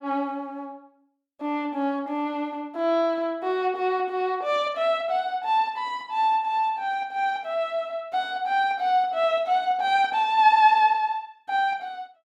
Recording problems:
none

